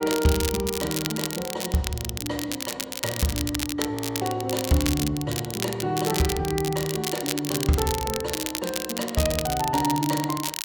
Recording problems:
crackle; vinyl, SNR 4 dB
audio freezing; at 4 s

